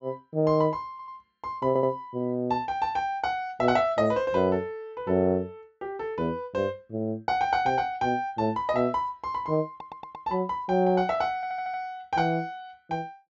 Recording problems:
treble missing; nothing above 8 kHz
stutter; 4 times, first at 1 s

